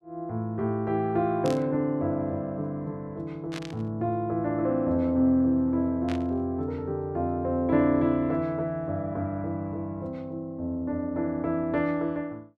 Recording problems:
static burst; at 1.5 s, at 3.5 s and at 6 s; peak -7 dB vs average level

